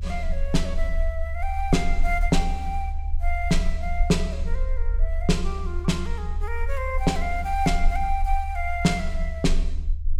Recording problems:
low-frequency rumble; below 48 Hz, strongest tone 24 Hz, SNR 2 dB

